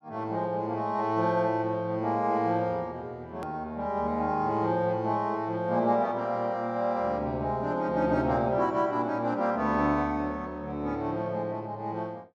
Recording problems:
edit click; at 3.5 s

